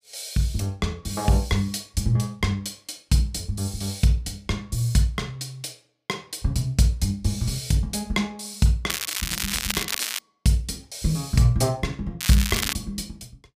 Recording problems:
crackling; from 9 to 10 s and at 12 s; loose cable, SNR 2 dB

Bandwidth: 15 kHz